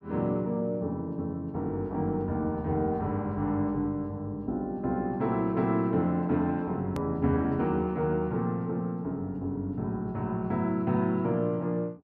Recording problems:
edit click; at 7 s

